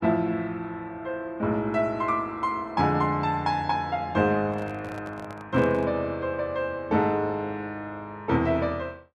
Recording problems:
handling noise; from 4.5 to 6 s; peak -9 dB vs average level

